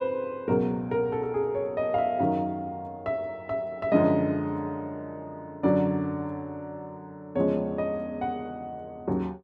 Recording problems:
none

